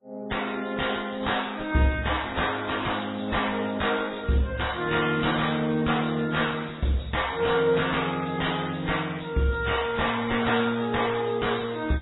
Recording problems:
lossy codec; AAC, then MP3, log-spectral distance 9 dB, nothing above 3.8 kHz
distortion; soft clipping, signal-to-distortion ratio 10 dB

